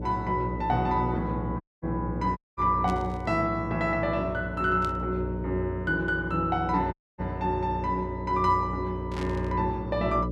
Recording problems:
electrical hum; 60 Hz, harmonics up to 600 Hz, SNR 7 dB
dropout; at 1.5 s, at 2.5 s and at 7 s
static burst; at 3 s, at 5 s and at 9 s; peak -10 dB vs average level

